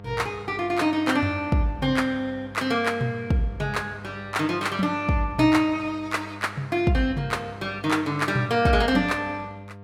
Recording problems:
hum; 50 Hz, harmonics up to 1.4 kHz, SNR 18 dB

